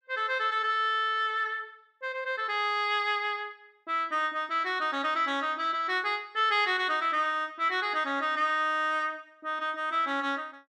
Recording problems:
none

